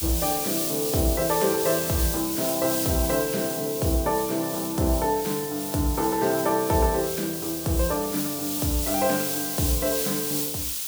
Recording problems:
background hiss; SNR 2 dB

